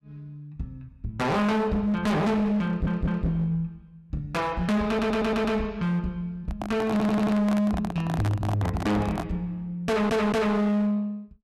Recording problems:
distorted audio; hard clipping, signal-to-distortion ratio 7 dB
audio stuttering; 4 times, first at 2.5 s
microphone handling noise; from 6.5 to 9.5 s; peak -2 dB vs average level

